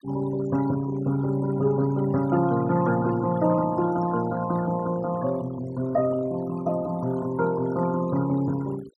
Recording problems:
noise reduction artefacts; signal-to-artefact ratio 17 dB

